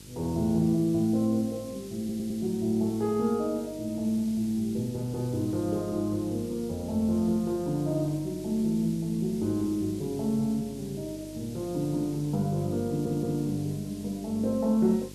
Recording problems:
hum; 50 Hz, harmonics up to 950 Hz, SNR 18 dB
background hiss; SNR 20 dB
audio stuttering; at 2 s and at 13 s

